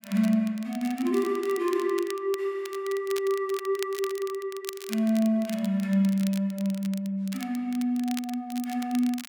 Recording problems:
crackle; vinyl, SNR 16 dB

